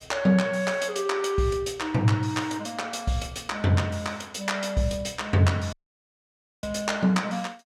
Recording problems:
dropout; at 5.5 s for 1 s

